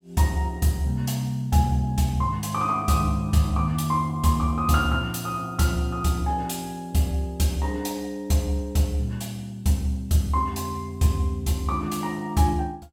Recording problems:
none

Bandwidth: 17.5 kHz